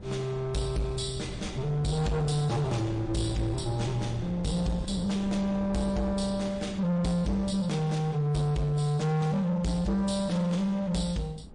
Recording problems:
lossy codec; MP3, log-spectral distance 2 dB, nothing above 9 kHz
distorted audio; soft clipping, signal-to-distortion ratio 10 dB
wind on the microphone; below 290 Hz, SNR 14 dB

